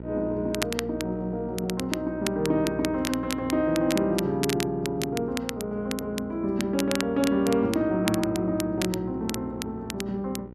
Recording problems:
hum; 60 Hz, harmonics up to 960 Hz, SNR 14 dB
crackle; vinyl, SNR 9 dB

